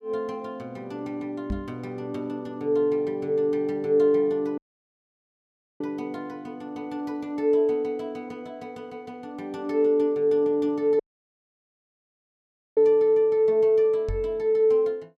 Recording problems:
microphone bump; at 1.5 s and at 14 s; peak -3 dB vs average level
audio cutting out; at 4.5 s for 1 s and at 11 s for 2 s

